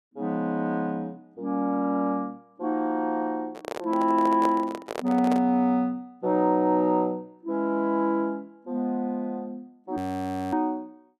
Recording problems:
handling noise; from 3.5 to 5.5 s; peak -1 dB vs average level
frozen audio; at 10 s for 0.5 s

